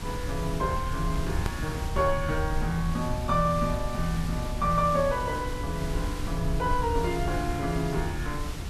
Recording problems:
hiss; SNR 10 dB
low-frequency rumble; below 84 Hz, SNR 5 dB
hard cut with a click; at 1.5 s

